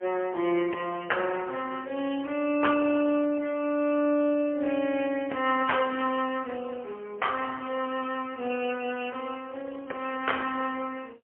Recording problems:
telephone audio; 300 Hz to 3.1 kHz, AMR-NB, then MP3

